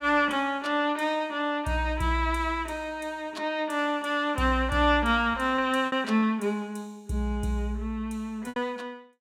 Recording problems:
packet loss; 2% of the sound replaced, filled with repeated pitch periods

